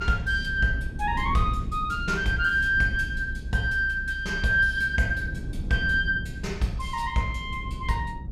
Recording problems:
low-frequency rumble; below 120 Hz, SNR 9 dB

